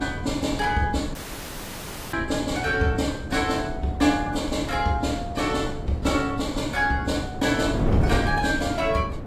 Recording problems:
lossy compression; AAC, log-spectral distance 4 dB
wind on the microphone; below 310 Hz, SNR 6 dB
dropout; at 1 s for 1 s

